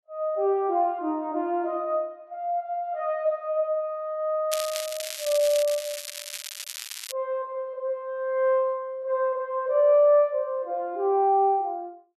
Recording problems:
crackling; from 4.5 to 7 s; loose cable, SNR 9 dB

